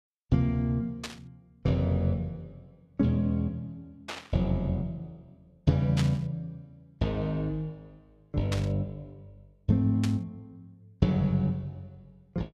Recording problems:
burst of static; 5 times, first at 1 s; peak -2 dB vs average level

